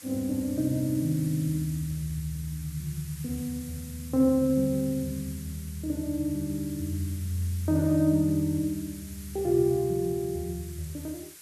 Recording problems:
hiss; SNR 16 dB

